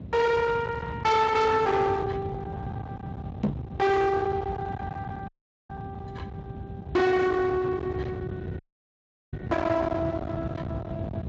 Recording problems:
lossy codec; Speex, log-spectral distance 2 dB, nothing above 7.3 kHz
distortion; hard clipping, signal-to-distortion ratio 8 dB
rumble; below 810 Hz, SNR 9 dB
microphone thump; at 3.5 s; peak +4 dB vs average level
dropout; at 5.5 s and at 8.5 s for 0.5 s

